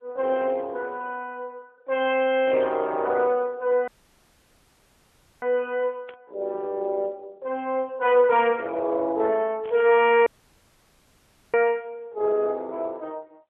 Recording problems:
telephone audio; 300 Hz to 3.3 kHz, AMR-NB
burst of static; 4 times, first at 2.5 s; peak -17 dB vs average level
dropout; at 4 s for 1.5 s and at 10 s for 1.5 s

